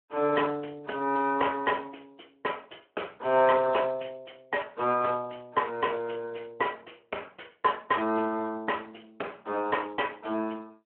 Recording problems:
telephone audio; 300 Hz to 3 kHz, Speex

